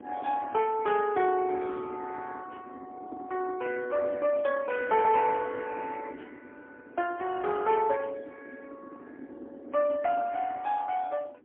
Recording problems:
telephone audio; 150 Hz to 3.4 kHz, AMR-NB, then MP3
wind noise; below 400 Hz, SNR 18 dB

